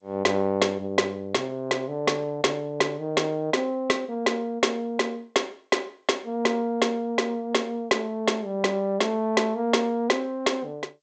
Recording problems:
lossy compression; G.722, log-spectral distance 2 dB, nothing above 7.6 kHz

